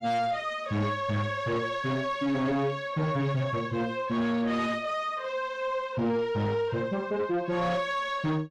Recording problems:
distorted audio; soft clipping, signal-to-distortion ratio 10 dB

